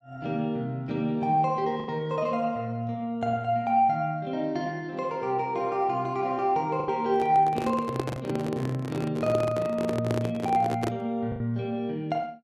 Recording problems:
packet loss; 2% of the sound replaced, filled with the last packet
microphone handling noise; from 7 to 11 s; peak +2 dB vs average level

